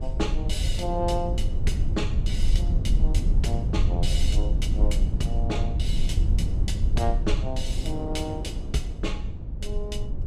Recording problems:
low-frequency rumble; below 76 Hz, SNR -5 dB
wind on the microphone; below 410 Hz, SNR 13 dB

